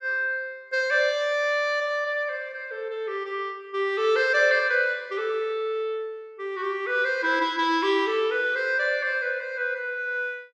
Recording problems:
none

